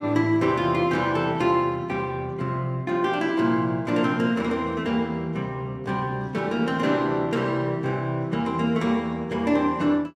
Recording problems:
none

